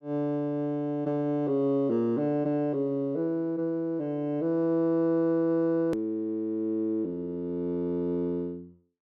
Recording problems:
edit click; at 6 s

